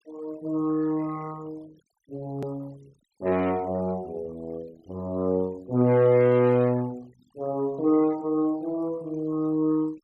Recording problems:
denoising artefacts; signal-to-artefact ratio 25 dB
hard cut with a click; at 2.5 s

